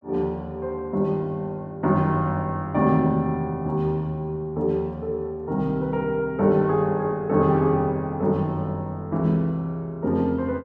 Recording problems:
none

